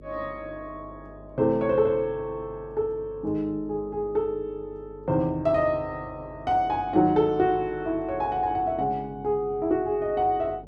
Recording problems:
hum; 50 Hz, harmonics up to 600 Hz, SNR 21 dB

